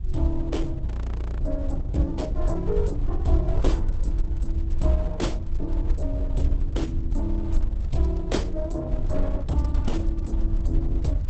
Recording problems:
lossy codec; Opus, log-spectral distance 2 dB, nothing above 8 kHz
low-frequency rumble; below 64 Hz, SNR -2 dB
audio freezing; at 1 s for 0.5 s

